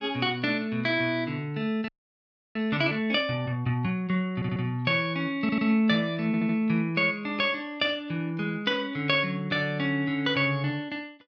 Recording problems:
frozen audio; at 2 s for 0.5 s
stutter; at 4.5 s, at 5.5 s and at 6.5 s

